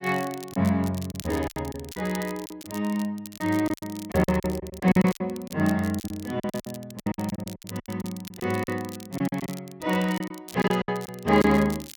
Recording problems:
crackle; vinyl, SNR 17 dB
lost packets; 14% of the sound replaced, filled with silence

